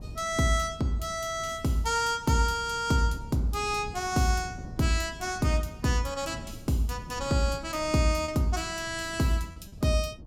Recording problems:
wind on the microphone; below 200 Hz, SNR 17 dB
lost packets; 0.8% of the sound replaced, filled with repeated pitch periods

